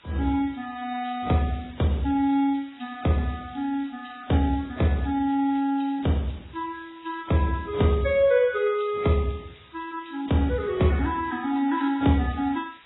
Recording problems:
lossy compression; Vorbis, then AAC, log-spectral distance 8 dB, nothing above 3.8 kHz
hiss; SNR 27 dB

